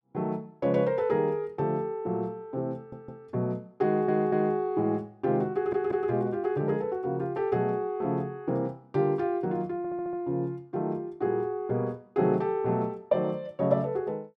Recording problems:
audio stuttering; 4 times, first at 3 s

